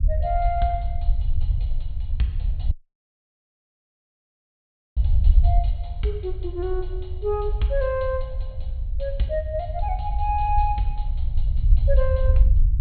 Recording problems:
treble cut off; nothing above 4.3 kHz
rumble; below 66 Hz, SNR -2 dB
dropout; at 2.5 s for 2.5 s

